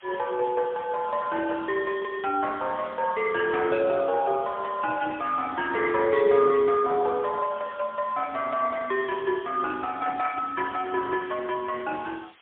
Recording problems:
phone line; 300 Hz to 3.4 kHz, AMR-NB, then MP3
hiss; SNR 25 dB

